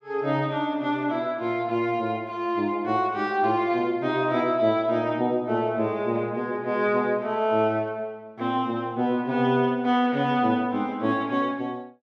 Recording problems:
none

